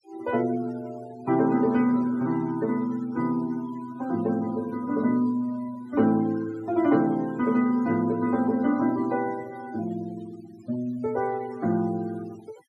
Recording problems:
noise reduction artefacts; signal-to-artefact ratio 21 dB

